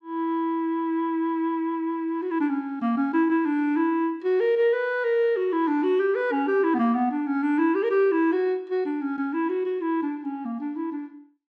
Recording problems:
none

